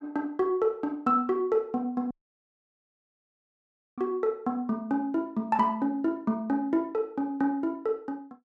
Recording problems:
audio cutting out; at 2 s for 2 s

